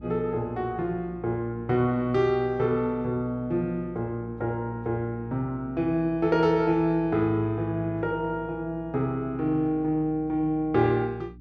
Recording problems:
electrical hum; 60 Hz, harmonics up to 300 Hz, SNR 20 dB

